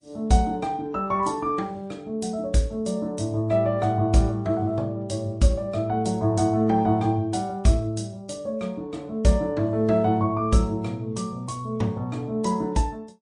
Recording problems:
codec artefacts; MP3, log-spectral distance 2 dB, nothing above 8.2 kHz

